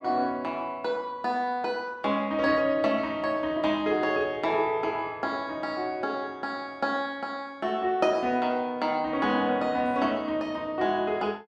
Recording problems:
none

